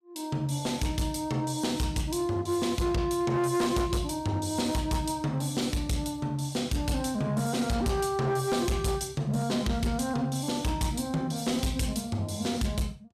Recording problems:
distortion; hard clipping, signal-to-distortion ratio 11 dB

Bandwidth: 14.5 kHz